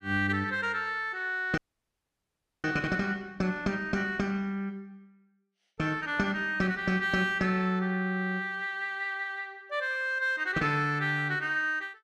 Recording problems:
audio cutting out; at 1.5 s for 1 s

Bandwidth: 13 kHz